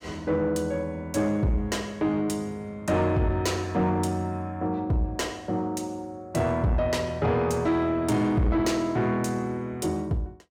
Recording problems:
distortion; soft clipping, signal-to-distortion ratio 11 dB

